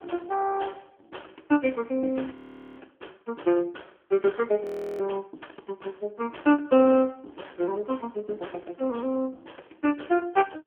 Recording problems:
telephone audio; 240 Hz to 3.2 kHz, AMR-NB
audio freezing; at 2.5 s and at 4.5 s

